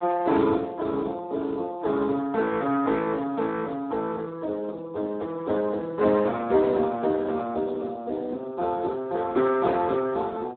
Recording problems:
phone line; 260 Hz to 2 kHz, Speex

